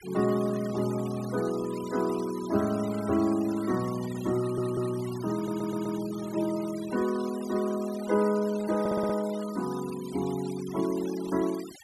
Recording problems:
denoising artefacts; signal-to-artefact ratio 16 dB
stutter; at 4.5 s, at 5.5 s and at 9 s

